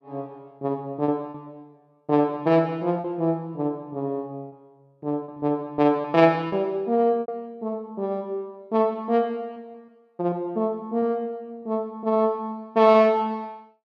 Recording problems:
lost packets; 4% of the sound replaced, filled with repeated pitch periods

